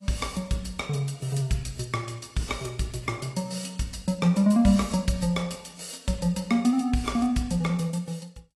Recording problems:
lossy compression; AAC, log-spectral distance 4 dB, nothing above 11.6 kHz

